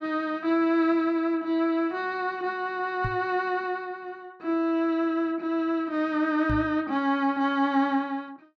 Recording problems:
microphone thump; at 3 s and at 6.5 s; peak -1 dB vs average level

